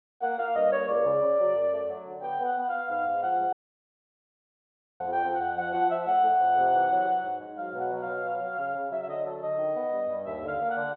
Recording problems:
treble missing; nothing above 4.4 kHz
dropout; at 3.5 s for 1.5 s

